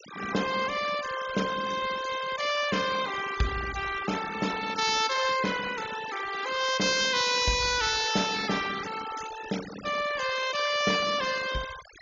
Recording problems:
low-pass filter; nothing above 7 kHz
noise reduction artefacts; signal-to-artefact ratio 11 dB

